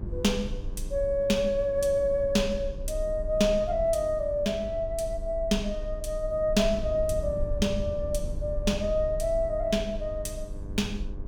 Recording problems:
hum; 50 Hz, harmonics up to 1.6 kHz, SNR 19 dB
low-frequency rumble; below 64 Hz, strongest tone 30 Hz, SNR 10 dB

